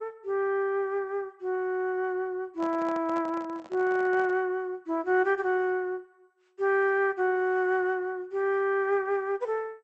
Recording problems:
lossy compression; MP2, log-spectral distance 2 dB
microphone handling noise; from 2.5 to 4.5 s; peak -9 dB vs average level

